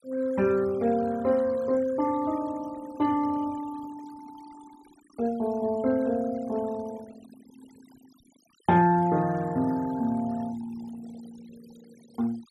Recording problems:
noise reduction artefacts; signal-to-artefact ratio 23 dB

